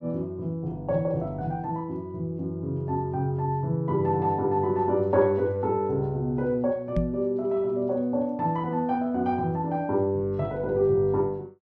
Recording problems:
microphone thump; at 7 s; peak +3 dB vs average level

